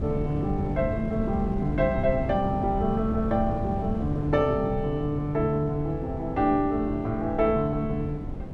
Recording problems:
wind on the microphone; below 210 Hz, SNR 7 dB

